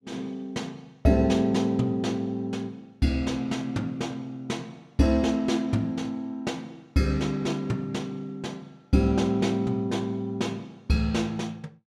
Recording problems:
none

